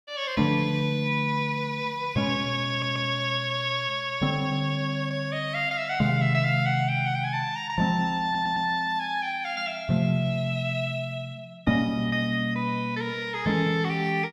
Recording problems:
stutter; at 2.5 s and at 8 s

